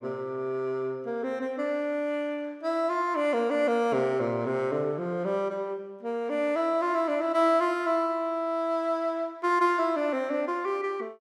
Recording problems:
none

